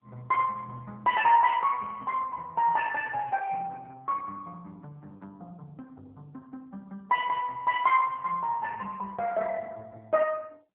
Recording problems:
telephone audio; 300 Hz to 2.9 kHz, AMR-NB

